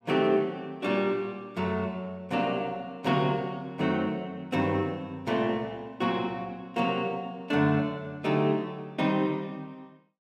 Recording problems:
none

